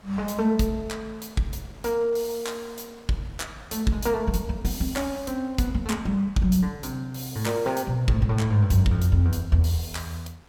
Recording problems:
wind noise; below 2.4 kHz, SNR 29 dB

